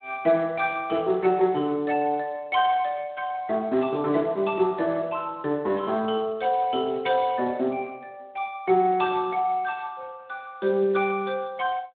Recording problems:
phone line; 190 Hz to 3.8 kHz, Speex

